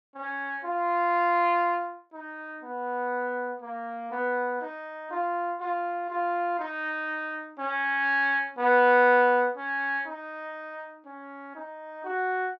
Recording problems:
none

